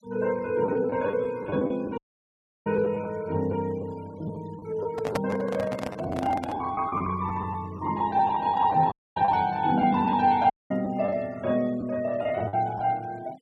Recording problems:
noise reduction artefacts; signal-to-artefact ratio 24 dB
packet loss; 8% of the sound replaced, filled with the last packet
audio cutting out; at 2 s for 0.5 s, at 9 s and at 11 s
microphone handling noise; from 5 to 6.5 s; peak +2 dB vs average level

